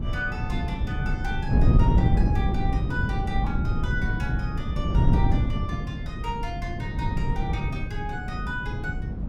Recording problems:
wind noise; below 150 Hz, SNR -8 dB

